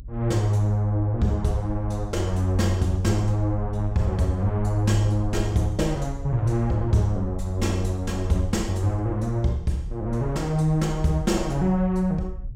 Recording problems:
low-frequency rumble; below 68 Hz, SNR 11 dB

